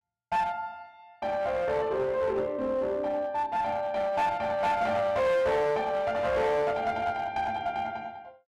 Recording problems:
distortion; hard clipping, uneven, signal-to-distortion ratio 10 dB

